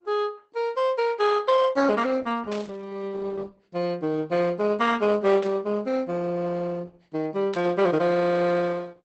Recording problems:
codec artefacts; Opus, log-spectral distance 3 dB, nothing above 8.2 kHz
burst of static; at 2.5 s, at 5.5 s and at 7.5 s; peak -10 dB vs average level

